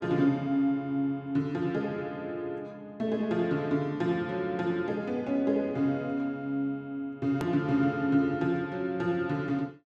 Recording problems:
edit click; at 7.5 s

